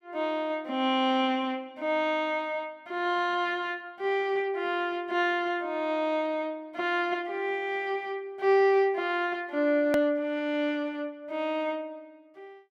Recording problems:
edit click; at 10 s

